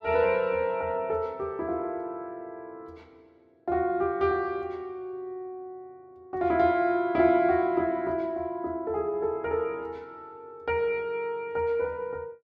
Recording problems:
none

